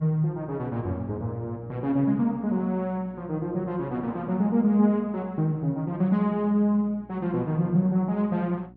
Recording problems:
mains hum; 60 Hz, harmonics up to 720 Hz, SNR 25 dB

